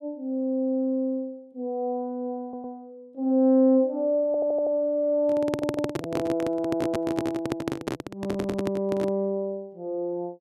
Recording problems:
audio stuttering; 4 times, first at 2.5 s
microphone handling noise; from 5 to 9 s; peak +2 dB vs average level

